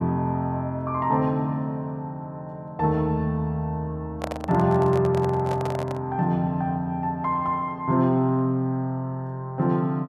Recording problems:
handling noise; from 4 to 6 s; peak -1 dB vs average level

